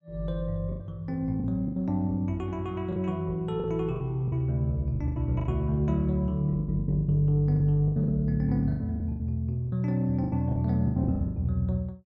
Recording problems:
lost packets; 13% of the sound replaced, filled with the last packet

